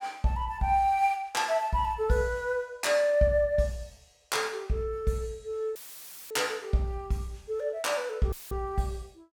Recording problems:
dropout; at 6 s for 0.5 s and at 8.5 s; filled with static

